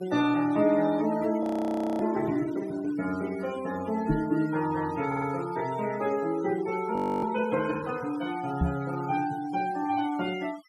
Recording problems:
noise reduction artefacts; signal-to-artefact ratio 17 dB
frozen audio; at 1.5 s for 0.5 s and at 7 s
knock on the microphone; at 4 s and at 8.5 s; peak +5 dB vs average level
stutter; at 5 s

